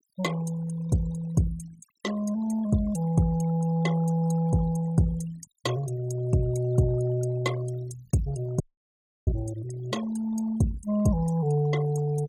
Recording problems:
denoising artefacts; signal-to-artefact ratio 17 dB
dropout; at 8.5 s for 0.5 s

